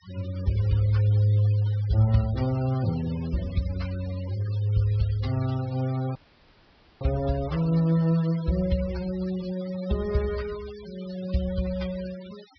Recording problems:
treble cut off; nothing above 5.5 kHz
denoising artefacts; signal-to-artefact ratio 19 dB
dropout; at 6 s for 1 s

